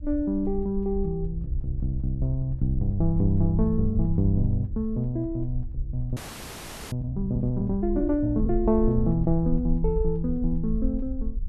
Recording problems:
low-frequency rumble; below 54 Hz, SNR 7 dB
audio freezing; at 6 s for 1 s

